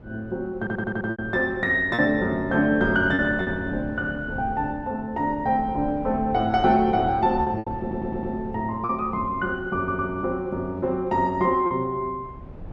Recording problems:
wind noise; below 280 Hz, SNR 16 dB
packet loss; 4% of the sound replaced, filled with repeated pitch periods
stutter; at 0.5 s, at 8 s and at 10 s

